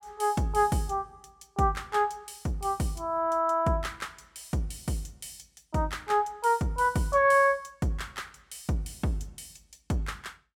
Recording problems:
none

